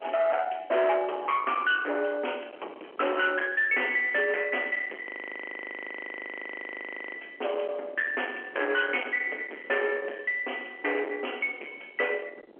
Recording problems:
phone line; 320 Hz to 3.2 kHz, G.711
distortion; soft clipping, signal-to-distortion ratio 9 dB
wind on the microphone; below 2 kHz, SNR 12 dB
frozen audio; at 5 s for 2 s

